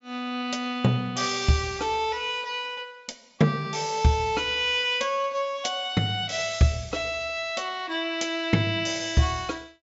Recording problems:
treble missing; nothing above 8 kHz

